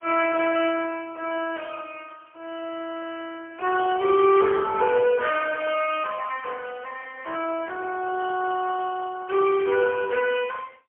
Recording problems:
phone line; 340 Hz to 3.1 kHz, AMR-NB, then MP3

